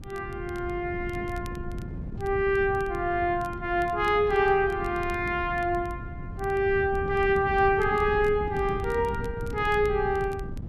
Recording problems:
wind noise; below 170 Hz, SNR 11 dB
crackle; vinyl, SNR 29 dB

